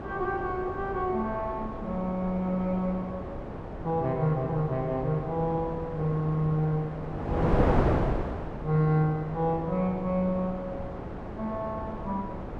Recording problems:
wind on the microphone; below 640 Hz, SNR 5 dB

